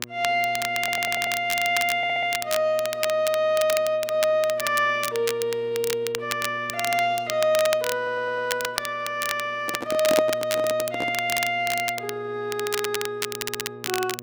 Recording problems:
hum; 60 Hz, harmonics up to 1.2 kHz, SNR 21 dB
crackling; vinyl, SNR 7 dB
audio stuttering; 4 times, first at 1 s
handling noise; from 9.5 to 11 s; peak +4 dB vs average level

